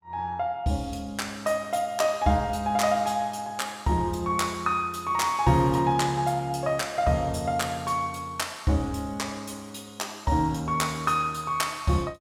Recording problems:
none

